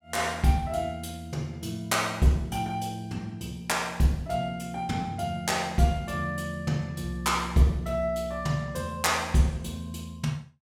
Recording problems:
none

